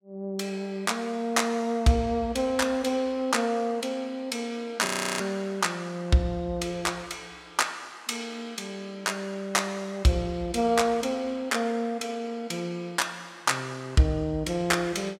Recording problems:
audio freezing; at 5 s

